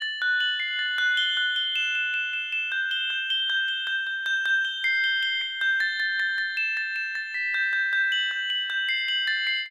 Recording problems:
none

